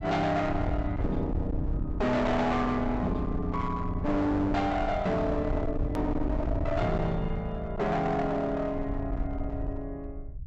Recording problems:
treble missing; nothing above 8 kHz
distorted audio; hard clipping, uneven, signal-to-distortion ratio 6 dB
low-frequency rumble; below 110 Hz, SNR 6 dB
click at an edit; at 6 s

